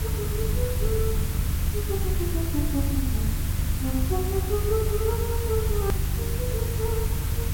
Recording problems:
hum; 50 Hz, harmonics up to 350 Hz, SNR 2 dB
background hiss; slope -2 dB per octave, SNR 3 dB
low-frequency rumble; below 80 Hz, SNR -2 dB
hard cut with a click; at 6 s

